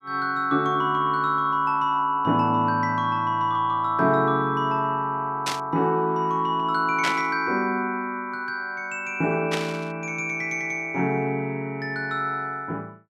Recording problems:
static burst; at 5.5 s, at 7 s and at 9.5 s; peak +1 dB vs average level

